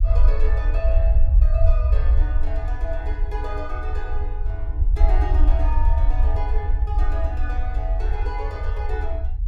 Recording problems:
rumble; below 60 Hz, SNR -11 dB

